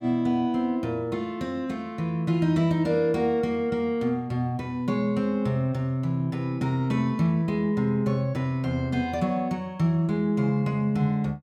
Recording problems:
none

